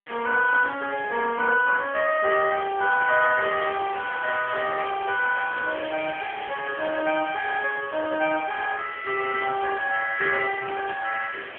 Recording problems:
phone line; 260 Hz to 2.3 kHz, AMR-NB
hiss; SNR 15 dB

